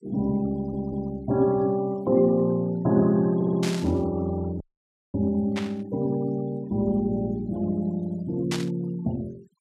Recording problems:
noise reduction artefacts; signal-to-artefact ratio 24 dB
stutter; at 0.5 s and at 3.5 s
burst of static; at 3.5 s, at 5.5 s and at 8.5 s; peak -2 dB vs average level
dropout; at 4.5 s for 0.5 s

